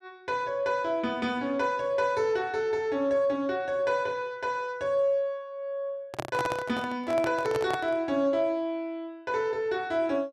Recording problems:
microphone handling noise; from 6 to 8 s; peak +1 dB vs average level

